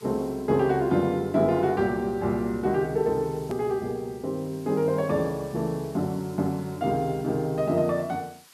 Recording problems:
hiss; SNR 25 dB
click at an edit; at 3.5 s

